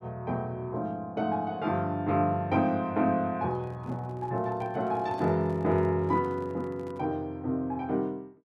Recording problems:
handling noise; from 3.5 to 7 s; peak -10 dB vs average level

